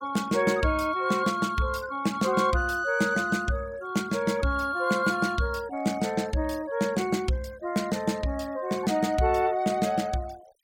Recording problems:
denoising artefacts; signal-to-artefact ratio 22 dB

